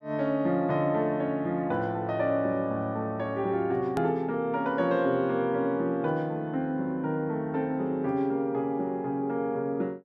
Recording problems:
hard cut with a click; at 4 s

